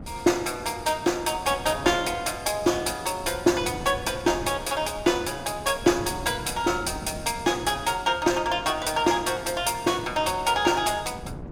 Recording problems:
wind on the microphone; below 280 Hz, SNR 16 dB

